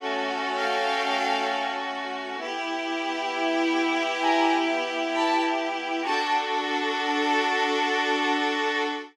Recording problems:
none

